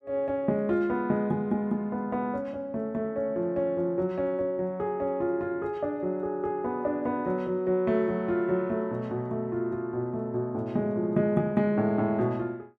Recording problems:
none

